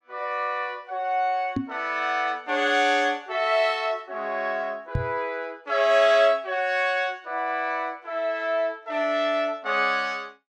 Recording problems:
knock on the microphone; at 1.5 s and at 5 s; peak +2 dB vs average level

